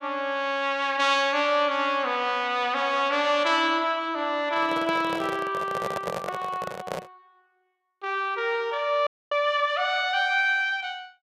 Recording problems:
microphone handling noise; from 4.5 to 7 s; peak -2 dB vs average level
audio cutting out; at 9 s

